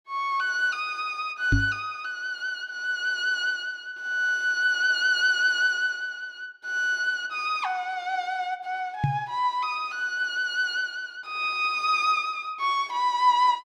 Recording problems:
microphone bump; at 1.5 s and at 9 s; peak +6 dB vs average level

